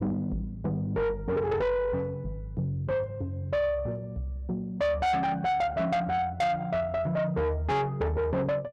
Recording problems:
distorted audio; soft clipping, signal-to-distortion ratio 8 dB

